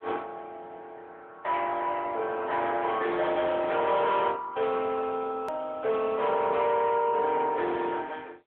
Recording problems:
telephone audio; 370 Hz to 3.6 kHz, AMR-NB
distorted audio; soft clipping, signal-to-distortion ratio 11 dB
hard cut with a click; at 5.5 s

